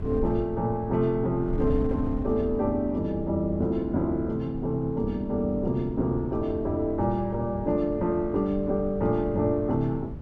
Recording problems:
wind noise; below 130 Hz, SNR 12 dB

